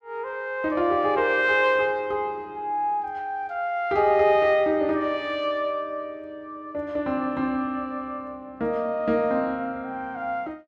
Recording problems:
none

